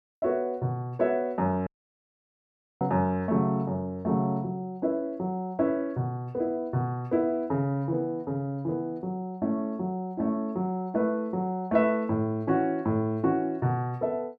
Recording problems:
audio cutting out; at 1.5 s for 1 s

